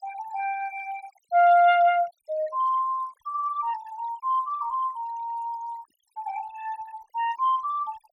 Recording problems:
noise reduction artefacts; signal-to-artefact ratio 23 dB

